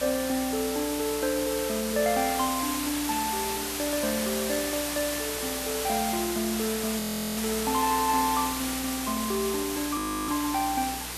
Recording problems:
mains hum; 60 Hz, harmonics up to 480 Hz, SNR 18 dB
background hiss; slope 0 dB per octave, SNR 2 dB
frozen audio; at 7 s and at 10 s

